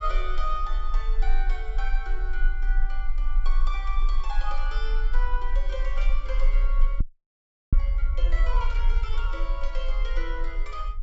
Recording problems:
treble missing; nothing above 8 kHz
low-frequency rumble; below 36 Hz, strongest tone 20 Hz, SNR -8 dB
burst of static; at 6 s and at 8.5 s; peak -8 dB vs average level
audio freezing; at 7 s for 0.5 s

